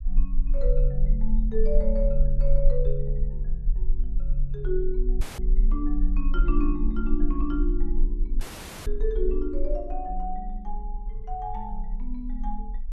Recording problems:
low-frequency rumble; below 36 Hz, strongest tone 20 Hz, SNR -3 dB
audio cutting out; at 5 s and at 8.5 s

